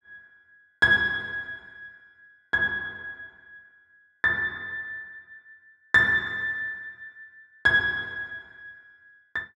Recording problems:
none

